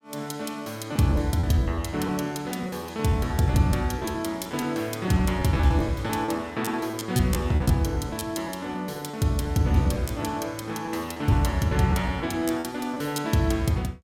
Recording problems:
lost packets; 9% of the sound replaced, filled with repeated pitch periods

